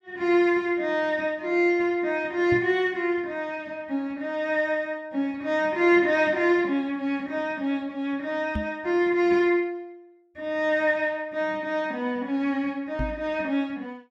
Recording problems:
knock on the microphone; at 2.5 s, at 8.5 s and at 13 s; peak -1 dB vs average level

